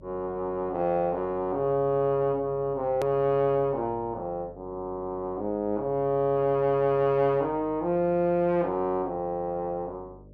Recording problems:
hum; 50 Hz, harmonics up to 600 Hz, SNR 23 dB
click at an edit; at 3 s

